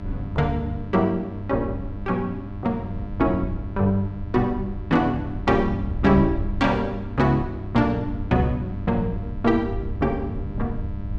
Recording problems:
hum; 50 Hz, harmonics up to 1.3 kHz, SNR 11 dB
wind on the microphone; below 92 Hz, SNR 11 dB

